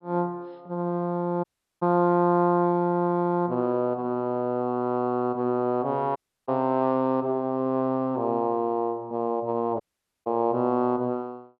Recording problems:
treble missing; nothing above 5.3 kHz
audio cutting out; at 1.5 s, at 6 s and at 10 s

